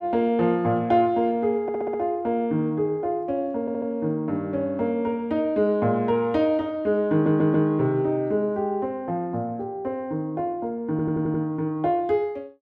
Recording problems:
stutter; 4 times, first at 1.5 s

